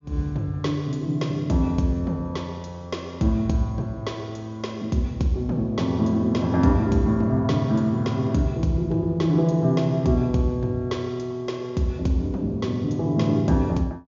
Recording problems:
treble missing; nothing above 7.2 kHz

